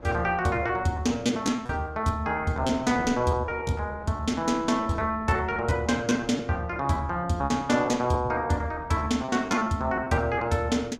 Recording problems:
wind on the microphone; below 610 Hz, SNR 20 dB
packet loss; 11% of the sound replaced, filled with repeated pitch periods

